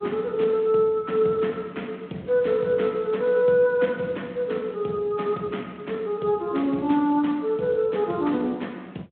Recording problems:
phone line; 190 Hz to 3.5 kHz, Speex

